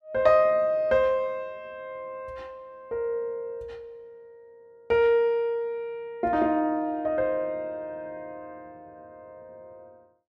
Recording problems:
none

